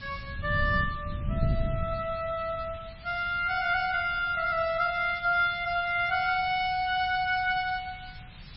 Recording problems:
codec artefacts; MP3, log-spectral distance 13 dB, nothing above 4.5 kHz
background hiss; SNR 21 dB
wind noise; below 140 Hz, SNR 8 dB

